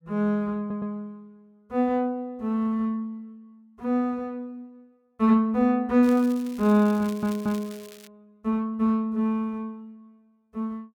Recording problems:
audio stuttering; at 0.5 s and at 7 s
crackling; from 6 to 8 s; loose cable, SNR 22 dB

